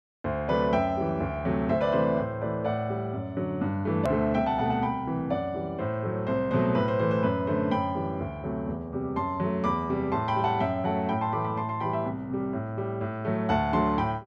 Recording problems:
hard cut with a click; at 4 s

